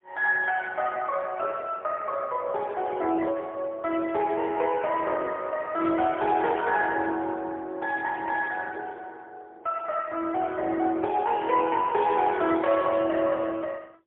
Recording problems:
phone line; 280 Hz to 2.5 kHz, AMR-NB, then MP3

